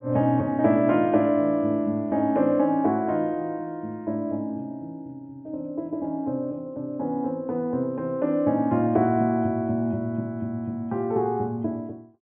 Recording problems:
treble cut off; nothing above 3.4 kHz

